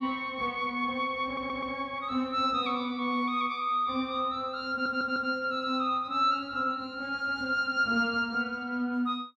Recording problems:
stutter; at 1.5 s and at 4.5 s

